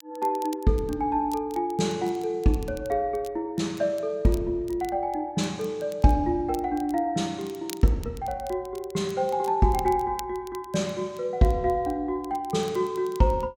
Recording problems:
crackling; vinyl, SNR 22 dB

